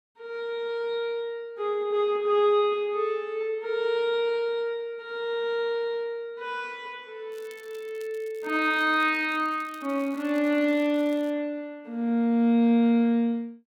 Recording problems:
crackling; from 7.5 to 11 s; loose cable, SNR 28 dB

